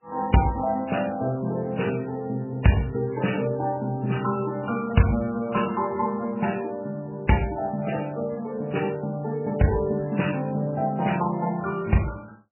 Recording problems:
lossy compression; MP3, then MP3, log-spectral distance 4 dB, nothing above 2.9 kHz

